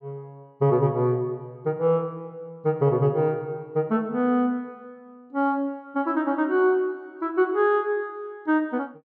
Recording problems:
none

